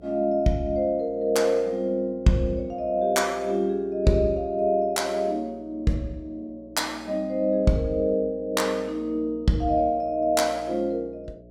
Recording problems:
hum; 60 Hz, harmonics up to 660 Hz, SNR 25 dB

